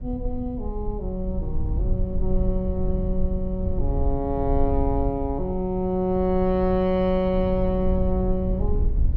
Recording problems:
rumble; below 74 Hz, SNR 3 dB

